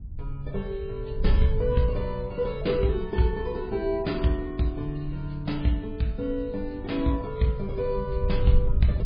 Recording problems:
lossy codec; MP3, log-spectral distance 2 dB, nothing above 11 kHz
wind on the microphone; below 70 Hz, SNR 5 dB

